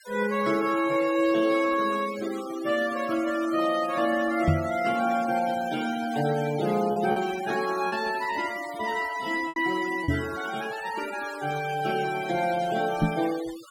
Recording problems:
noise reduction artefacts; signal-to-artefact ratio 15 dB
lost packets; 1.8% of the sound replaced, filled with repeated pitch periods
microphone bump; at 4.5 s, at 10 s and at 13 s; peak +7 dB vs average level

